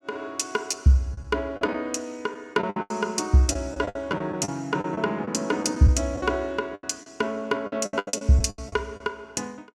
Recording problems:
packet loss; 12% of the sound replaced, filled with the last packet

